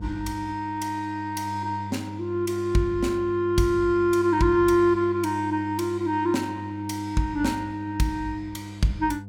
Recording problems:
hum; 50 Hz, harmonics up to 500 Hz, SNR 13 dB

